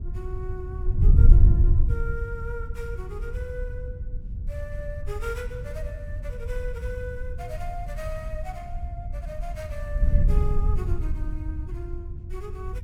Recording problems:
wind on the microphone; below 78 Hz, SNR -11 dB

